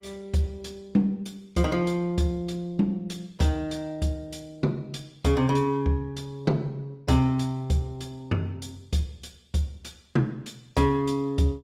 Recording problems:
lossy compression; Opus, log-spectral distance 2 dB, nothing above 15.5 kHz

